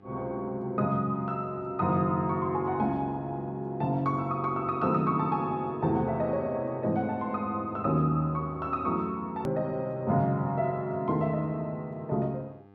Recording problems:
electrical hum; 50 Hz, harmonics up to 1.7 kHz, SNR 26 dB
click at an edit; at 9.5 s

